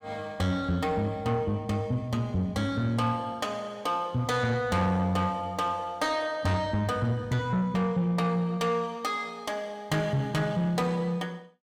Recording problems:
distortion; soft clipping, signal-to-distortion ratio 12 dB

